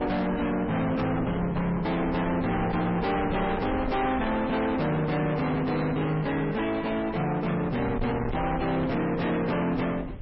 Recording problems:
lossy codec; MP3, log-spectral distance 3 dB, nothing above 5.3 kHz
distorted audio; soft clipping, signal-to-distortion ratio 6 dB
wind on the microphone; below 780 Hz, SNR 9 dB

